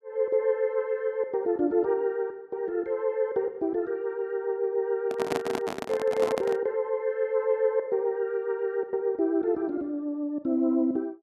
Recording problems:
handling noise; from 5 to 6.5 s; peak +1 dB vs average level

